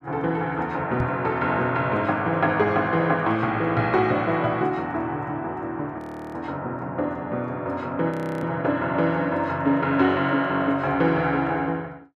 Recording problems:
microphone bump; at 1 s; peak -1 dB vs average level
audio freezing; at 6 s and at 8 s

